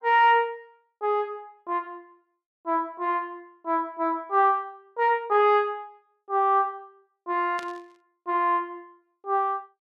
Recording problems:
static burst; at 7.5 s; peak -11 dB vs average level

